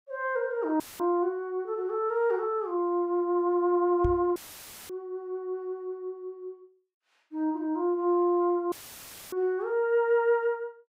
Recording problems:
audio cutting out; at 1 s, at 4.5 s for 0.5 s and at 8.5 s for 0.5 s; filled with static
knock on the microphone; at 4 s; peak +1 dB vs average level

